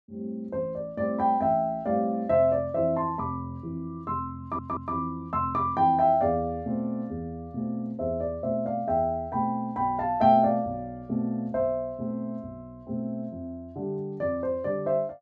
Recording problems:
stutter; at 4.5 s

